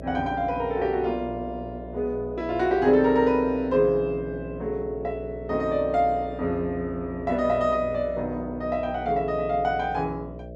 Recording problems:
hum; 60 Hz, harmonics up to 660 Hz, SNR 13 dB

